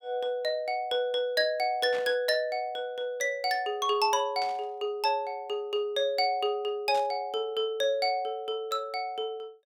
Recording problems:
burst of static; at 2 s, at 4.5 s and at 7 s; peak -9 dB vs average level

